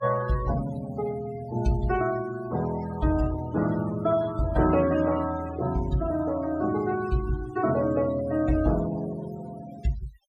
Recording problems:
denoising artefacts; signal-to-artefact ratio 16 dB

